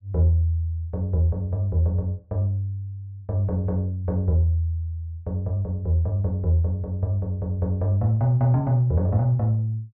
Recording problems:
treble cut off; nothing above 4.7 kHz

